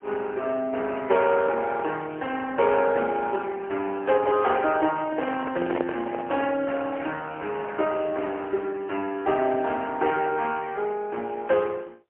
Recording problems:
phone line; 280 Hz to 3.2 kHz, AMR-NB, then MP3
handling noise; from 5 to 6.5 s; peak -1 dB vs average level

